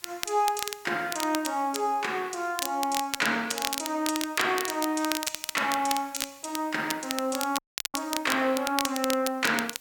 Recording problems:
background hiss; slope +1 dB per octave, SNR 24 dB
crackling; vinyl, SNR 5 dB
audio cutting out; at 7.5 s

